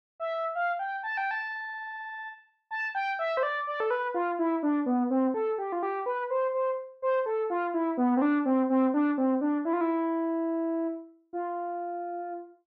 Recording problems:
none

